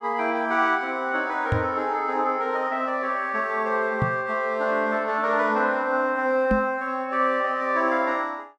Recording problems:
knock on the microphone; at 1.5 s, at 4 s and at 6.5 s; peak +3 dB vs average level

